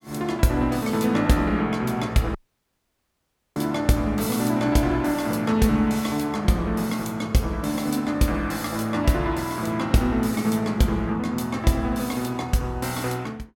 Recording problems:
dropout; at 2.5 s for 1 s

